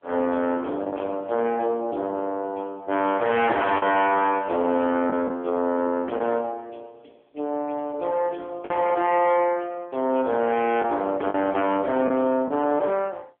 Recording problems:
phone line; 220 Hz to 3.3 kHz, AMR-NB
distortion; hard clipping, uneven, signal-to-distortion ratio 11 dB
lost packets; 2% of the sound replaced, filled with the last packet

